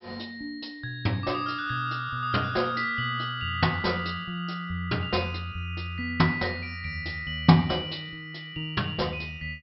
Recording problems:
treble missing; nothing above 5.5 kHz

